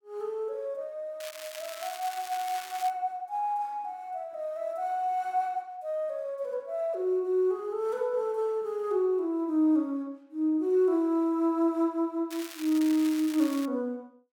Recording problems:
crackle; from 1 to 3 s and from 12 to 14 s; loose cable, SNR 13 dB

